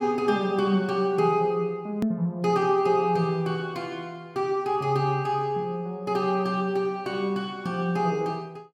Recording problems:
hard cut with a click; at 2 s

